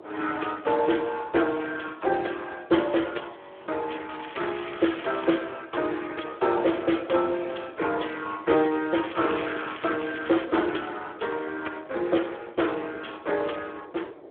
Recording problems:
phone line; 280 Hz to 3.4 kHz, Speex
wind on the microphone; below 630 Hz, SNR 21 dB
audio freezing; at 3.5 s
crackle; from 4 to 5.5 s and from 9 to 10 s; loose cable, SNR 13 dB

